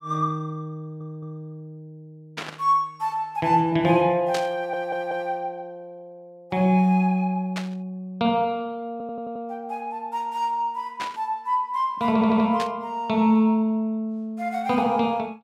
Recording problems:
audio stuttering; 4 times, first at 1 s
burst of static; 5 times, first at 2.5 s; peak -3 dB vs average level

